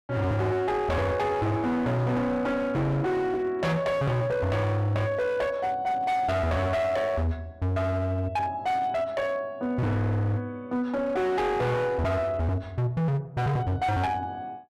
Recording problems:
distortion; hard clipping, signal-to-distortion ratio 8 dB

